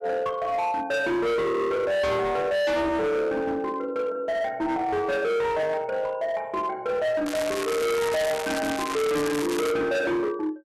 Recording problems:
distorted audio; hard clipping, signal-to-distortion ratio 6 dB
crackling; from 7.5 to 9.5 s; loose cable, SNR 7 dB

